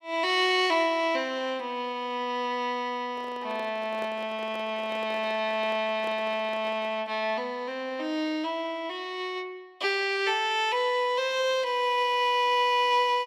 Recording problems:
microphone handling noise; from 3 to 7 s; peak -10 dB vs average level

